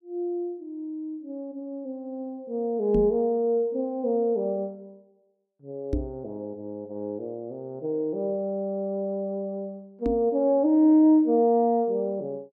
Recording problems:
microphone bump; at 3 s, at 6 s and at 10 s; peak +2 dB vs average level

